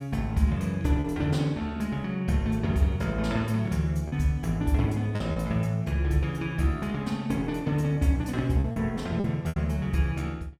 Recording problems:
packet loss; 3% of the sound replaced, filled with repeated pitch periods

